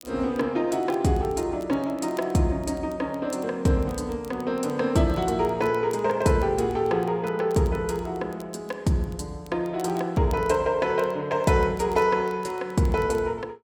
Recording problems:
crackling; vinyl, SNR 28 dB

